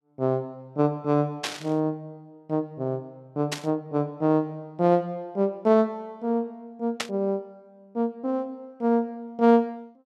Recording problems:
burst of static; at 1.5 s, at 3.5 s and at 7 s; peak +2 dB vs average level

